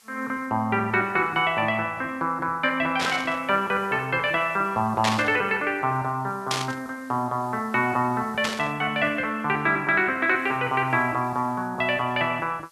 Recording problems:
hiss; slope +1 dB per octave, SNR 30 dB
static burst; 4 times, first at 3 s; peak +3 dB vs average level

